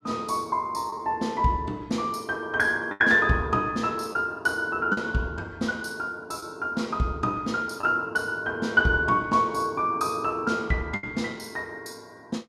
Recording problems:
lost packets; 2% of the sound replaced, filled with the last packet

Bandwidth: 15 kHz